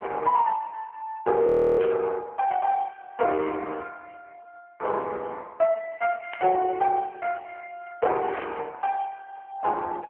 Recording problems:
telephone audio; 320 Hz to 2.8 kHz, AMR-NB
audio freezing; at 1.5 s
burst of static; at 2 s, at 6.5 s and at 8.5 s; peak -11 dB vs average level

